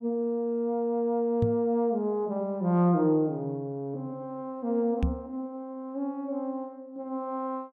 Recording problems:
microphone thump; at 1.5 s and at 5 s; peak +5 dB vs average level

